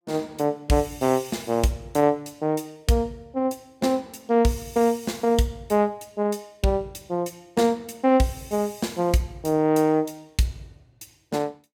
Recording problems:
none

